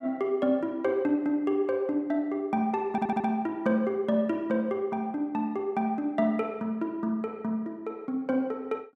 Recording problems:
stutter; at 3 s

